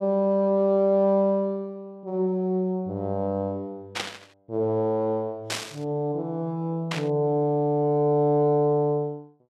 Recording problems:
static burst; at 4 s, at 5.5 s and at 7 s; peak 0 dB vs average level

